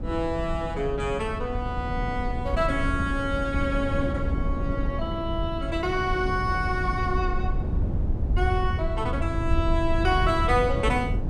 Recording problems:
low-frequency rumble; below 82 Hz, SNR 6 dB
wind on the microphone; below 180 Hz, SNR 4 dB

